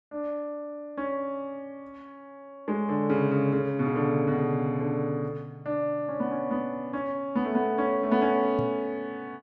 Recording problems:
knock on the microphone; at 8.5 s; peak -2 dB vs average level

